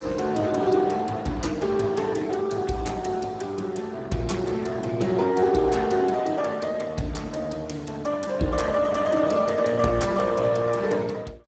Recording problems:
lossy compression; Speex, log-spectral distance 4 dB, nothing above 7.8 kHz

